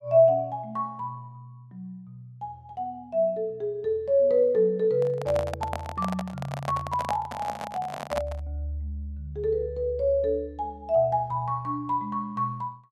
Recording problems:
microphone handling noise; from 5 to 8.5 s; peak +1 dB vs average level

